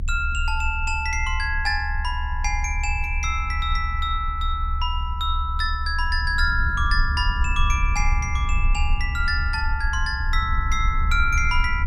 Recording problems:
rumble; below 70 Hz, strongest tone 30 Hz, SNR 2 dB

